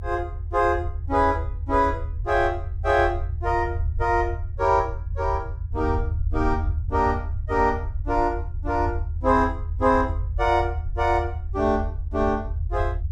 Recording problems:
rumble; below 80 Hz, SNR 5 dB

